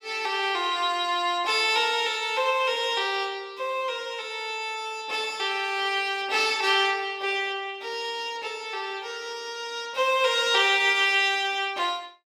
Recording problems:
none

